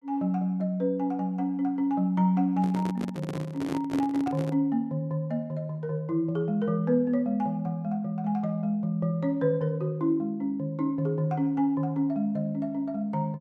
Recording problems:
microphone handling noise; from 2.5 to 4.5 s; peak -2 dB vs average level

